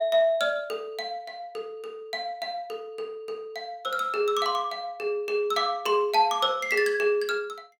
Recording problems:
none

